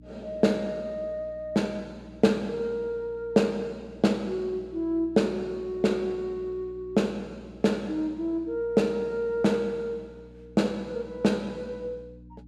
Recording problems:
hum; 60 Hz, harmonics up to 300 Hz, SNR 21 dB

